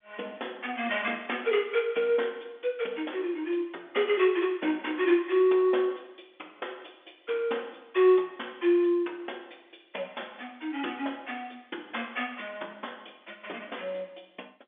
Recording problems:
phone line; 280 Hz to 3.5 kHz, G.711

